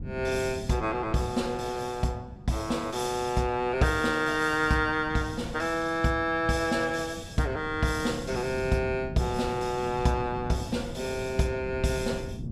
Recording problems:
wind noise; below 210 Hz, SNR 13 dB

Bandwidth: 14.5 kHz